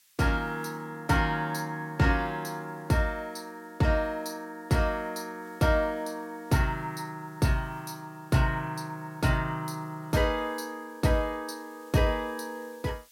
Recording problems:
background hiss; slope +5 dB per octave, SNR 29 dB

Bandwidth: 16.5 kHz